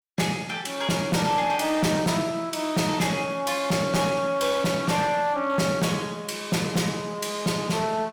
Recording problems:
distortion; hard clipping, signal-to-distortion ratio 11 dB

